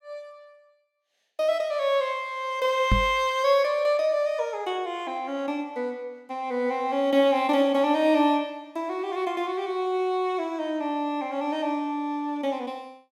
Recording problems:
microphone thump; at 3 s; peak +6 dB vs average level

